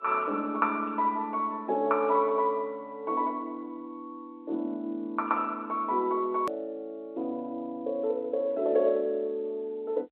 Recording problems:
telephone audio; 280 Hz to 3.6 kHz, G.711
hard cut with a click; at 6.5 s

